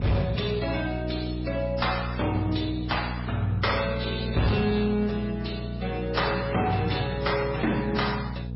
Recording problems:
lossy codec; MP3, then AAC, log-spectral distance 5 dB, nothing above 5.3 kHz
distortion; hard clipping, uneven, signal-to-distortion ratio 10 dB
electrical hum; 60 Hz, harmonics up to 480 Hz, SNR 6 dB

